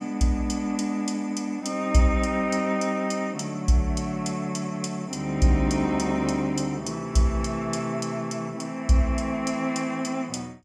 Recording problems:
none

